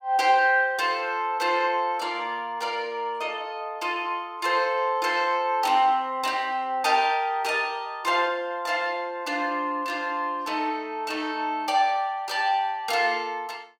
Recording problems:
none

